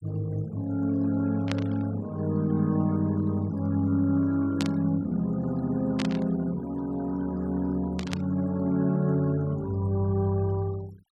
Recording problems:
noise reduction artefacts; signal-to-artefact ratio 23 dB
burst of static; 4 times, first at 1.5 s; peak -2 dB vs average level

